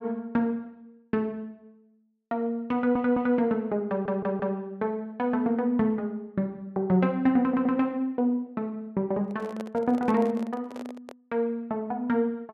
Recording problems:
audio stuttering; at 2.5 s, at 4 s and at 7.5 s
handling noise; from 9 to 11 s; peak -8 dB vs average level

